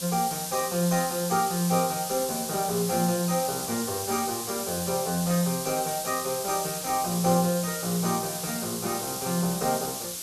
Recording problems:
background hiss; SNR 4 dB

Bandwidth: 13.5 kHz